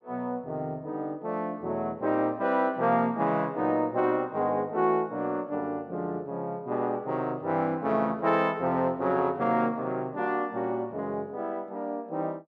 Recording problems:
none

